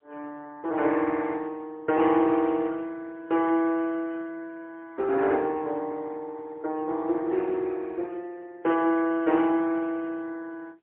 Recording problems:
telephone audio; 260 Hz to 2.9 kHz, AMR-NB, then MP3

